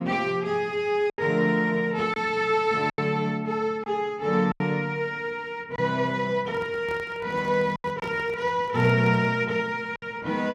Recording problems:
packet loss; 4% of the sound replaced, filled with silence
microphone handling noise; from 6.5 to 9.5 s; peak -10 dB vs average level

